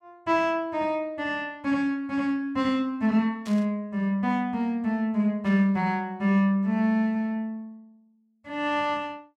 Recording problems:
static burst; at 3.5 s and at 5.5 s; peak -13 dB vs average level

